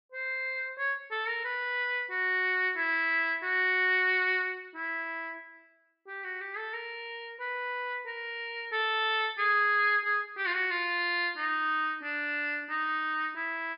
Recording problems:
treble cut off; nothing above 5.5 kHz

